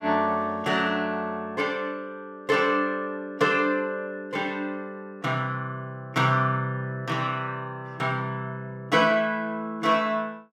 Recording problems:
none

